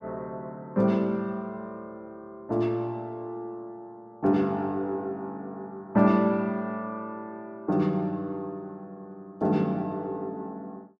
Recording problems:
none

